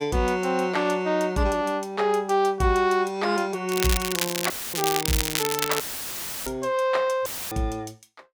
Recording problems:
crackling; from 3.5 to 6.5 s; loose cable, SNR 2 dB
audio cutting out; at 4.5 s, at 6 s for 0.5 s and at 7.5 s; filled with static

